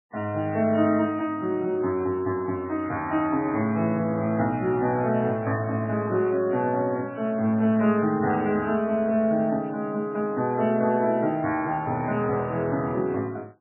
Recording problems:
lossy codec; MP3, log-spectral distance 2 dB, nothing above 2.8 kHz

